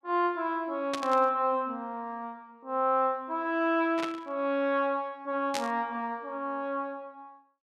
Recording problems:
burst of static; at 1 s, at 4 s and at 5.5 s; peak 0 dB vs average level

